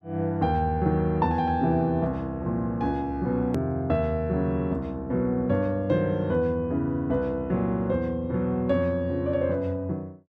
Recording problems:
hard cut with a click; at 3.5 s

